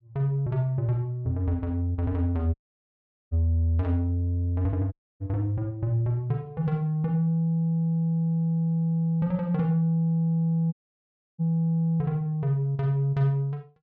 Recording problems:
dropout; at 2.5 s for 1 s, at 5 s and at 11 s for 0.5 s

